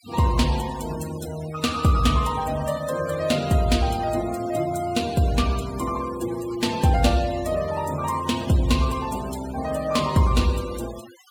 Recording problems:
denoising artefacts; signal-to-artefact ratio 16 dB

